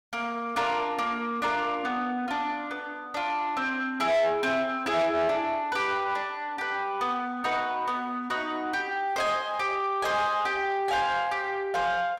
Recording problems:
distorted audio; soft clipping, signal-to-distortion ratio 11 dB

